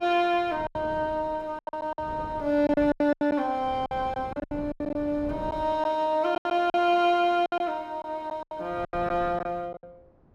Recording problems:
wind on the microphone; below 440 Hz, SNR 17 dB
packet loss; 13% of the sound replaced, filled with silence

